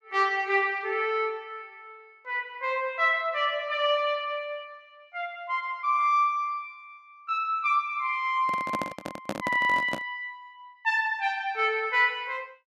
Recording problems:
handling noise; from 8.5 to 10 s; peak 0 dB vs average level

